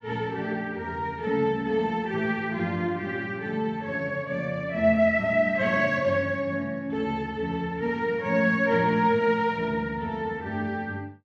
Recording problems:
none

